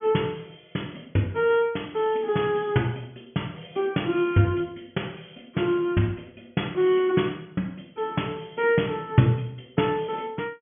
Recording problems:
treble cut off; nothing above 3.4 kHz

